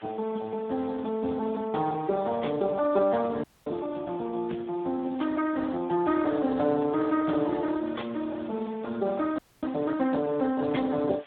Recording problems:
phone line; 220 Hz to 3.6 kHz, Speex
background hiss; SNR 23 dB
frozen audio; at 3.5 s and at 9.5 s

